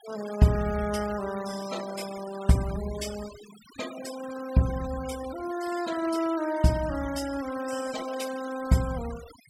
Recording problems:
denoising artefacts; signal-to-artefact ratio 14 dB

